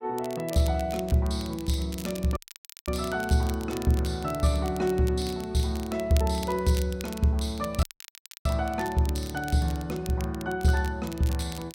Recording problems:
crackle; vinyl, SNR 16 dB
dropout; at 2.5 s for 0.5 s and at 8 s for 0.5 s

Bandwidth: 16 kHz